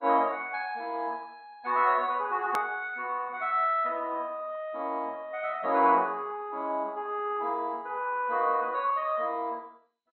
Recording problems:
lossy compression; MP2, log-spectral distance 2 dB, nothing above 15.1 kHz
edit click; at 2.5 s

